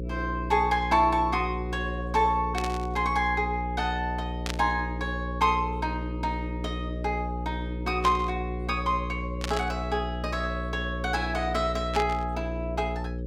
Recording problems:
hum; 60 Hz, harmonics up to 540 Hz, SNR 5 dB
burst of static; 5 times, first at 2.5 s; peak 0 dB vs average level

